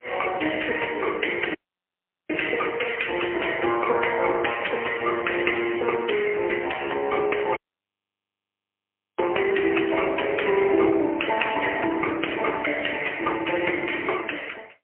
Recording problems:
phone line; 300 Hz to 3.1 kHz, AMR-NB, then MP3
audio cutting out; at 1.5 s for 1 s and at 7.5 s for 1.5 s

